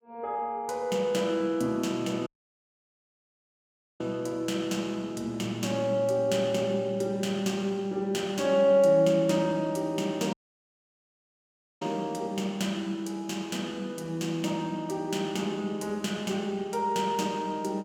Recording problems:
dropout; at 2.5 s for 1.5 s and at 10 s for 1.5 s

